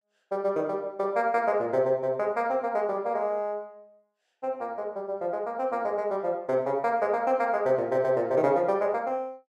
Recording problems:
none

